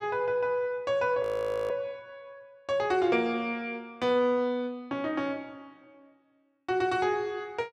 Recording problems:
frozen audio; at 1 s

